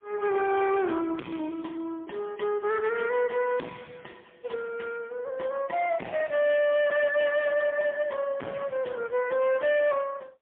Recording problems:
phone line; 220 Hz to 2.5 kHz, AMR-NB, then MP3
distorted audio; soft clipping, signal-to-distortion ratio 8 dB

